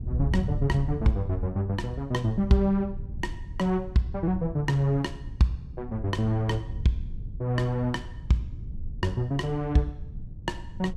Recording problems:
rumble; below 100 Hz, SNR 16 dB
wind noise; below 110 Hz, SNR 10 dB

